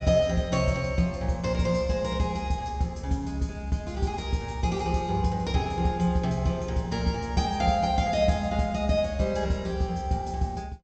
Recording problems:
treble missing; nothing above 8 kHz

